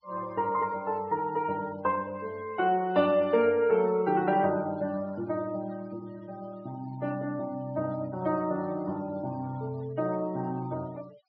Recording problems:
treble missing; nothing above 5.5 kHz
noise reduction artefacts; signal-to-artefact ratio 24 dB

